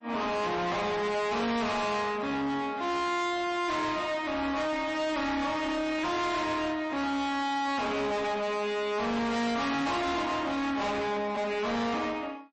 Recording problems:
lossy compression; MP3, log-spectral distance 3 dB, nothing above 8 kHz
distorted audio; soft clipping, signal-to-distortion ratio 6 dB

